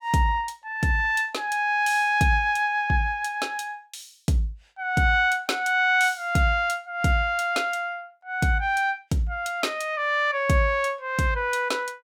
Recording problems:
none

